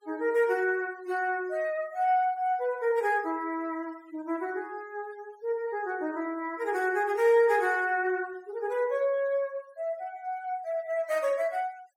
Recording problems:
noise reduction artefacts; signal-to-artefact ratio 25 dB

